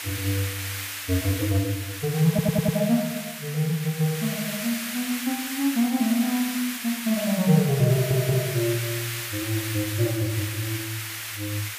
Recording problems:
hiss; SNR 6 dB
audio stuttering; at 2.5 s and at 8 s

